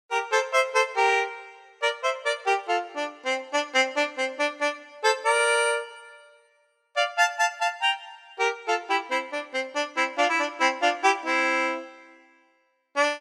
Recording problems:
none

